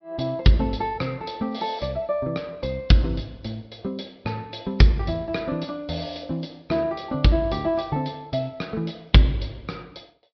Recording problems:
low-pass filter; nothing above 5.3 kHz
lossy codec; MP3, log-spectral distance 3 dB

